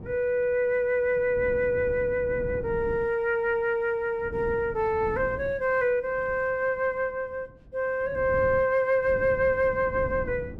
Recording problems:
wind noise; below 240 Hz, SNR 15 dB

